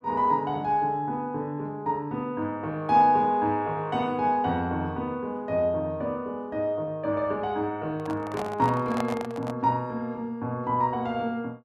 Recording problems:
microphone handling noise; from 8 to 9.5 s; peak -1 dB vs average level

